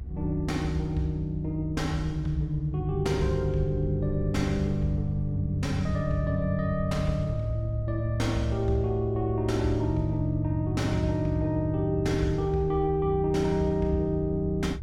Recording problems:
rumble; below 70 Hz, strongest tone 64 Hz, SNR 10 dB

